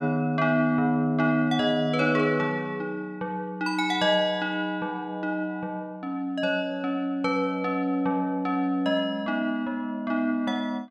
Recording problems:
none

